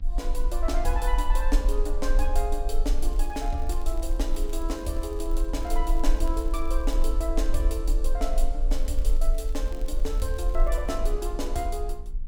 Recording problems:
hum; 60 Hz, harmonics up to 1.1 kHz, SNR 20 dB
rumble; below 38 Hz, strongest tone 22 Hz, SNR -3 dB
crackling; from 3 to 7 s and from 8.5 to 11 s; loose cable, SNR 22 dB

